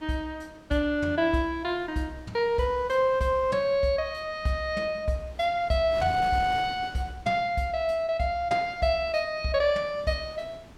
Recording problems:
wind on the microphone; below 1.1 kHz, SNR 21 dB

